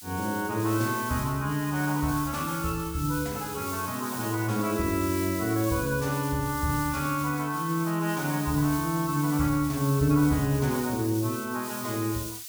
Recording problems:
hiss; slope +6 dB per octave, SNR 10 dB

